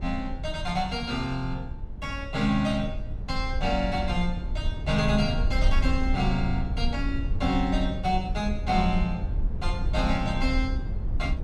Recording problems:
rumble; below 74 Hz, SNR 3 dB

